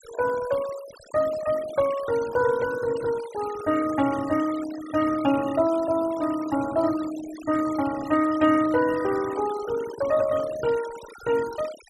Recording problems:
denoising artefacts; signal-to-artefact ratio 15 dB

